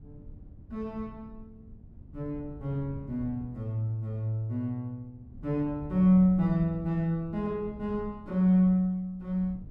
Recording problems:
wind on the microphone; below 140 Hz, SNR 18 dB

